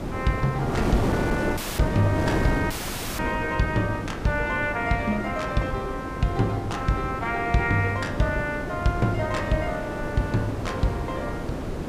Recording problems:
wind noise; below 540 Hz, SNR 4 dB
audio cutting out; at 1.5 s and at 2.5 s

